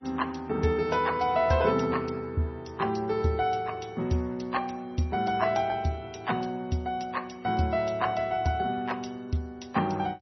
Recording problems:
lossy compression; MP3, then MP3, log-spectral distance 3 dB, nothing above 5.8 kHz

